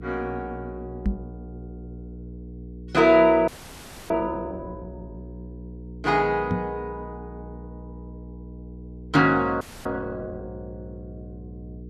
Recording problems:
electrical hum; 60 Hz, harmonics up to 480 Hz, SNR 17 dB
microphone thump; at 1 s and at 6.5 s; peak +2 dB vs average level
frozen audio; at 3.5 s for 0.5 s and at 9.5 s

